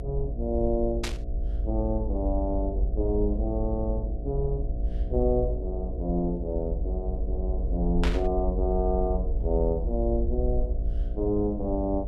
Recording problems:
hum; 60 Hz, harmonics up to 720 Hz, SNR 10 dB
low-frequency rumble; below 54 Hz, strongest tone 48 Hz, SNR 2 dB
burst of static; at 1 s and at 8 s; peak +2 dB vs average level

